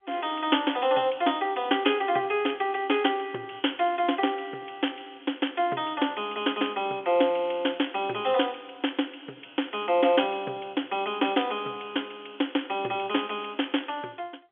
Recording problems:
phone line; 240 Hz to 3.4 kHz, G.711

